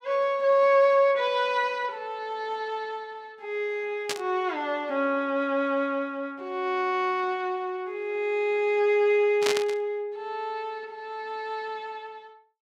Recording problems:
static burst; at 4 s and at 9.5 s; peak +3 dB vs average level

